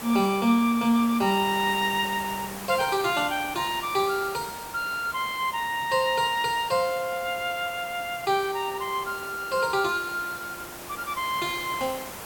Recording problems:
hiss; slope -4 dB per octave, SNR 12 dB

